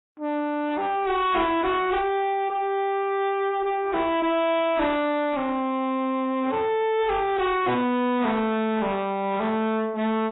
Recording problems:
codec artefacts; AAC, then AAC, log-spectral distance 2 dB, nothing above 3.8 kHz
distorted audio; soft clipping, signal-to-distortion ratio 6 dB

